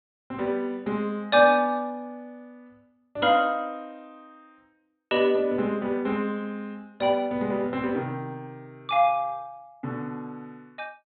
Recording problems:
low-pass filter; nothing above 4 kHz

